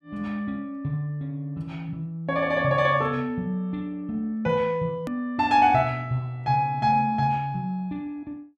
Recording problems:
click at an edit; at 5 s

